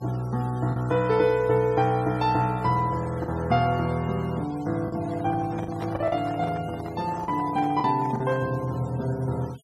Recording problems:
denoising artefacts; signal-to-artefact ratio 22 dB
packet loss; 4% of the sound replaced, filled with the last packet
handling noise; from 5 to 8.5 s; peak -6 dB vs average level

